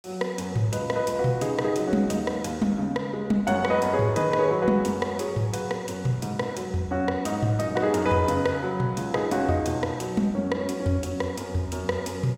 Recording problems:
none

